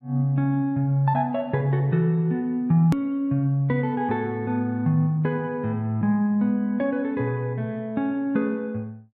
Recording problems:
edit click; at 3 s

